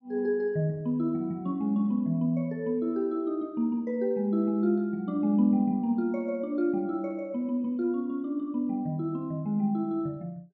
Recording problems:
none

